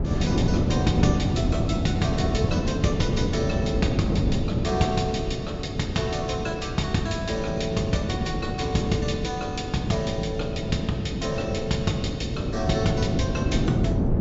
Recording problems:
treble cut off; nothing above 8 kHz
wind on the microphone; below 280 Hz, SNR -1 dB

